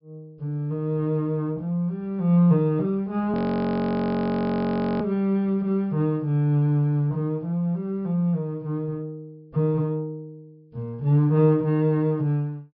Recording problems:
treble cut off; nothing above 5.5 kHz
audio freezing; at 3.5 s for 1.5 s

